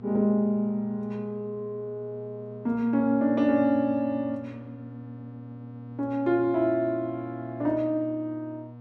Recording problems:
electrical hum; 60 Hz, harmonics up to 1.1 kHz, SNR 16 dB

